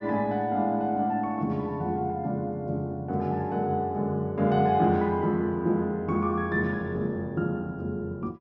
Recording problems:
treble cut off; nothing above 8 kHz

